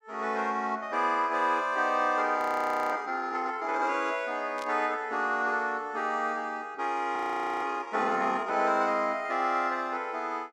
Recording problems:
frozen audio; at 2.5 s for 0.5 s and at 7 s
burst of static; at 4.5 s; peak -11 dB vs average level

